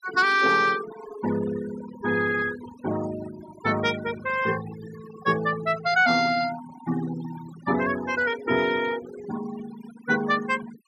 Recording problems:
noise reduction artefacts; signal-to-artefact ratio 13 dB

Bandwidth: 14.5 kHz